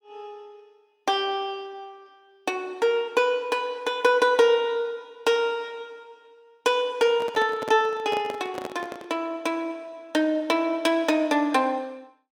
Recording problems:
microphone handling noise; from 7 to 9 s; peak -5 dB vs average level

